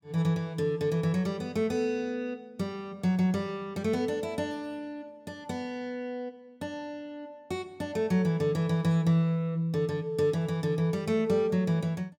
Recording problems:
none

